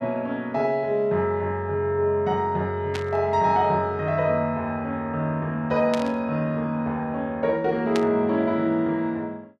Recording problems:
static burst; at 3 s, at 6 s and at 8 s; peak -3 dB vs average level

